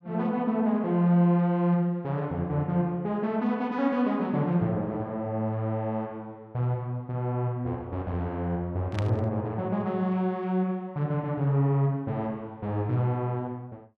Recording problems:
burst of static; at 9 s; peak -5 dB vs average level

